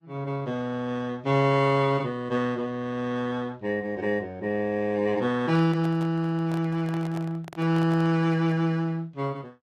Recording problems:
lossy codec; Vorbis, log-spectral distance 2 dB
microphone handling noise; from 5.5 to 8.5 s; peak -10 dB vs average level

